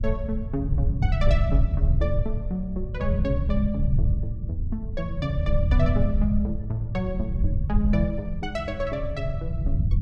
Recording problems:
low-frequency rumble; below 98 Hz, SNR -3 dB

